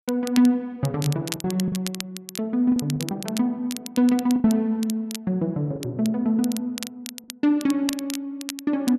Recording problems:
crackle; vinyl, SNR 12 dB
lost packets; 4% of the sound replaced, filled with the last packet

